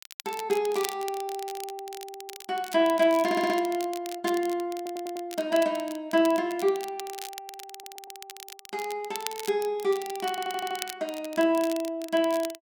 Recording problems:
crackle; vinyl, SNR 14 dB
audio stuttering; 4 times, first at 3.5 s

